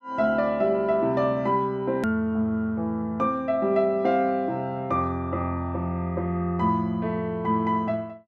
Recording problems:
hard cut with a click; at 2 s

